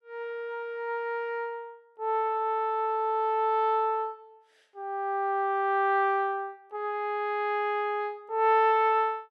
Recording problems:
none

